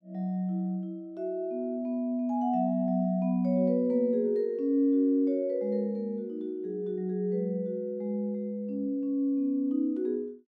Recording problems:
none

